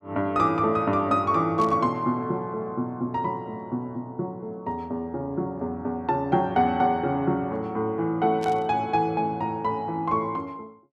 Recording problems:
static burst; at 1.5 s and at 8.5 s; peak -10 dB vs average level

